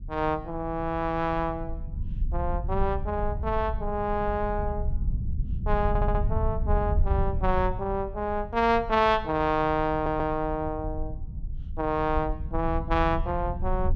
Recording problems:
rumble; below 78 Hz, SNR 5 dB
audio stuttering; at 6 s and at 10 s

